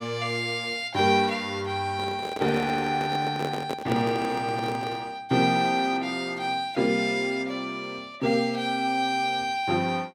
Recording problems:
handling noise; from 2 to 5 s; peak 0 dB vs average level

